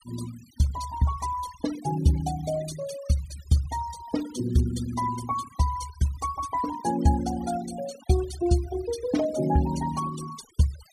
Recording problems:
denoising artefacts; signal-to-artefact ratio 14 dB

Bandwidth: 15 kHz